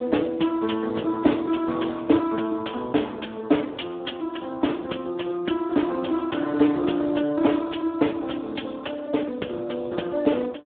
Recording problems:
telephone audio; 170 Hz to 3.5 kHz, Speex

